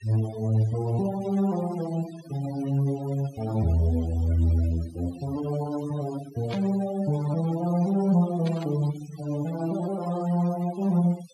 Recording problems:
noise reduction artefacts; signal-to-artefact ratio 19 dB
static burst; at 6.5 s and at 8.5 s; peak -9 dB vs average level

